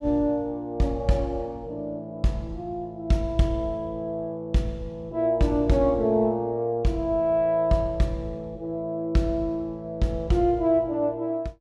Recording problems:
none

